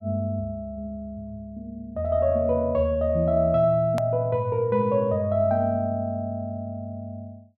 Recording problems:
edit click; at 4 s

